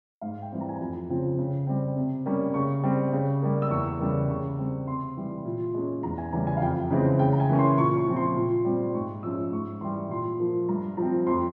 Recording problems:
none

